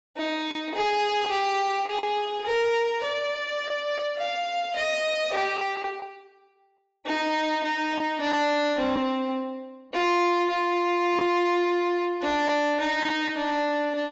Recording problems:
codec artefacts; AAC, log-spectral distance 2 dB, nothing above 7.6 kHz
distortion; soft clipping, signal-to-distortion ratio 11 dB
packet loss; 3% of the sound replaced, filled with the last packet

